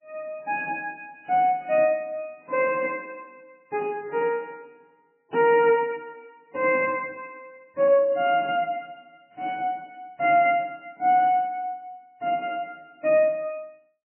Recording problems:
codec artefacts; MP3, log-spectral distance 2 dB, nothing above 2.5 kHz

